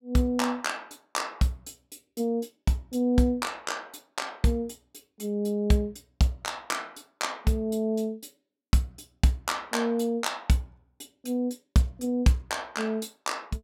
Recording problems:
none

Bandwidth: 16.5 kHz